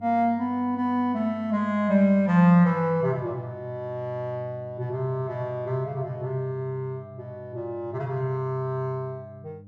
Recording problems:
electrical hum; 50 Hz, harmonics up to 500 Hz, SNR 21 dB

